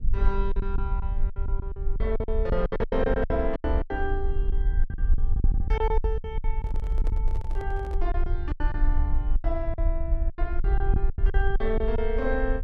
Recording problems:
rumble; below 50 Hz, strongest tone 20 Hz, SNR -3 dB
packet loss; 16% of the sound replaced, filled with silence
microphone handling noise; from 6.5 to 8 s; peak -6 dB vs average level

